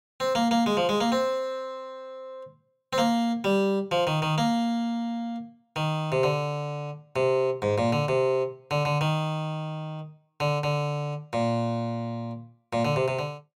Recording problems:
none

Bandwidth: 16 kHz